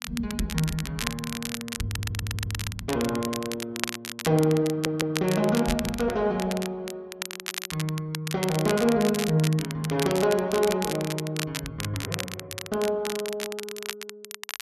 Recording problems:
crackling; vinyl, SNR 7 dB
audio stuttering; at 2 s and at 4.5 s

